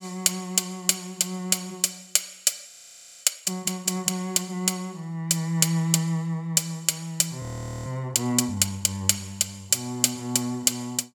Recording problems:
audio freezing; at 2.5 s for 0.5 s and at 7.5 s

